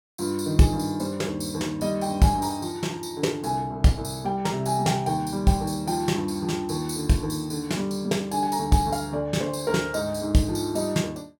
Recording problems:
none

